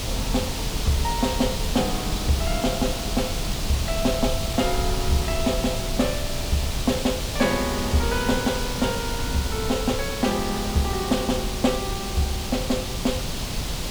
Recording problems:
hiss; SNR 3 dB
rumble; below 76 Hz, SNR 7 dB

